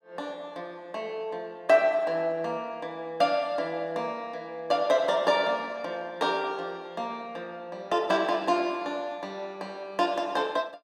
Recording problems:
none

